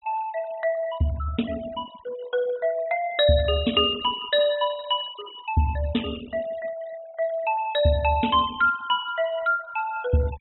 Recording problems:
low-pass filter; nothing above 3.9 kHz
denoising artefacts; signal-to-artefact ratio 19 dB

